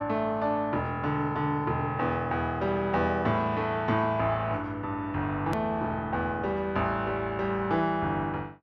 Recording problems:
hard cut with a click; at 5.5 s

